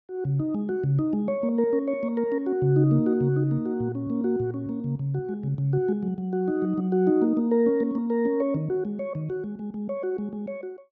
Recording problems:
none

